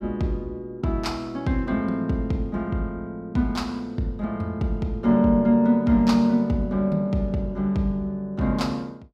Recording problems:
none

